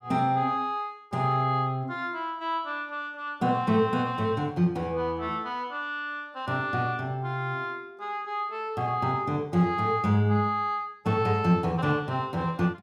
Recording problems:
none

